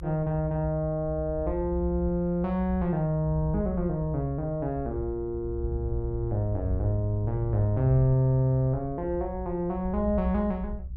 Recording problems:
low-frequency rumble; below 68 Hz, strongest tone 66 Hz, SNR 9 dB

